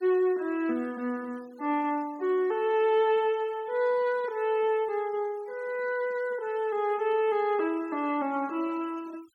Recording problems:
denoising artefacts; signal-to-artefact ratio 27 dB

